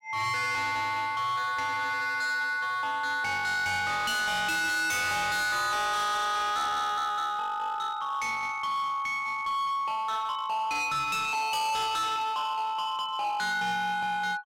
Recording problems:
distorted audio; hard clipping, signal-to-distortion ratio 6 dB

